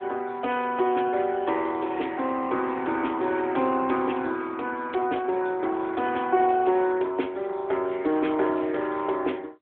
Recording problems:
telephone audio; 260 Hz to 3.5 kHz, AMR-NB

